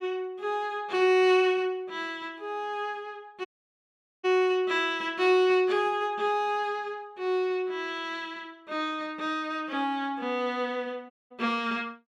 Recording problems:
dropout; at 3.5 s for 1 s and at 11 s

